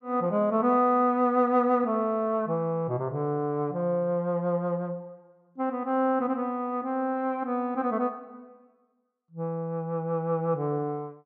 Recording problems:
none

